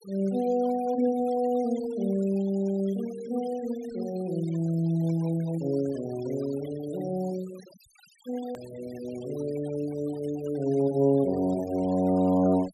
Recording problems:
noise reduction artefacts; signal-to-artefact ratio 21 dB
click at an edit; at 8.5 s

